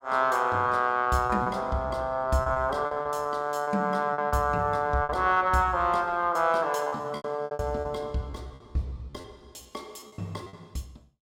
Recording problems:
packet loss; 12% of the sound replaced, filled with repeated pitch periods

